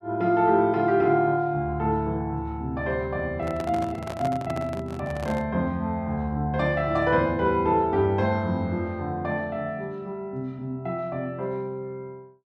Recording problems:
microphone handling noise; from 3.5 to 5.5 s; peak -5 dB vs average level

